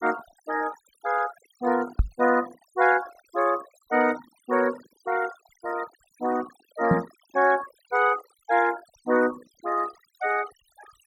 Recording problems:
noise reduction artefacts; signal-to-artefact ratio 16 dB
knock on the microphone; at 2 s and at 7 s; peak +8 dB vs average level

